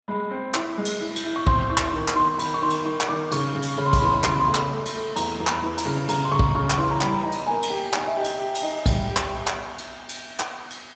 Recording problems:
codec artefacts; Speex, log-spectral distance 5 dB, nothing above 7.8 kHz

